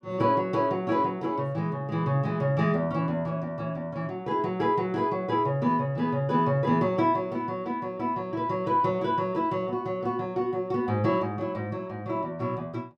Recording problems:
none

